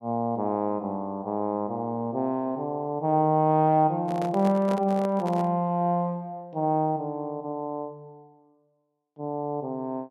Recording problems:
handling noise; from 4 to 5.5 s; peak -5 dB vs average level

